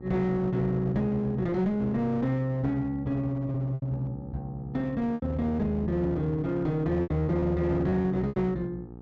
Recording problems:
low-pass filter; nothing above 8 kHz
distortion; hard clipping, uneven, signal-to-distortion ratio 9 dB
hum; 60 Hz, harmonics up to 960 Hz, SNR 16 dB
lost packets; 5% of the sound replaced, filled with repeated pitch periods

